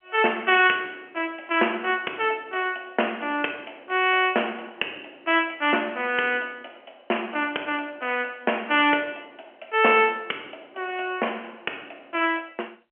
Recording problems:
phone line; 260 Hz to 3.1 kHz, G.711

